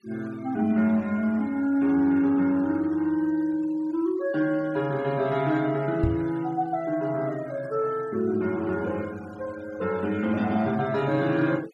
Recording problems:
noise reduction artefacts; signal-to-artefact ratio 24 dB
microphone thump; at 6 s; peak +5 dB vs average level

